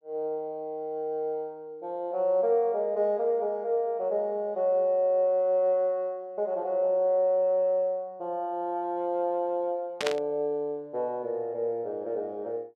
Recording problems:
burst of static; at 10 s; peak +2 dB vs average level

